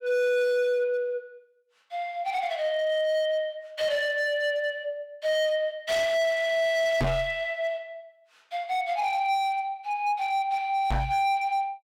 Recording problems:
distorted audio; hard clipping, signal-to-distortion ratio 7 dB
microphone bump; at 7 s and at 11 s; peak +4 dB vs average level

